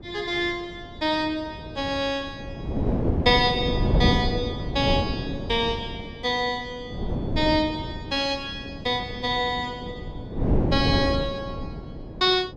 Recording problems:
wind noise; below 320 Hz, SNR 3 dB

